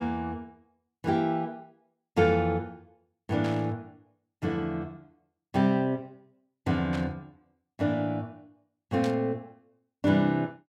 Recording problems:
burst of static; at 3.5 s, at 7 s and at 9 s; peak -7 dB vs average level

